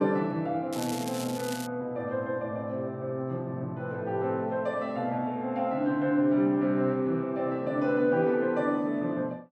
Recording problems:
crackle; at 0.5 s; loose cable, SNR 12 dB

